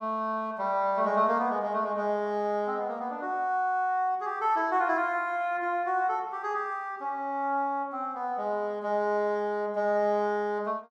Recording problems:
none

